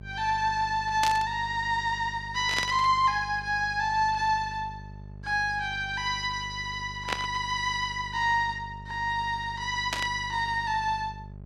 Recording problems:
electrical hum; 50 Hz, harmonics up to 650 Hz, SNR 16 dB
static burst; 4 times, first at 1 s; peak +3 dB vs average level

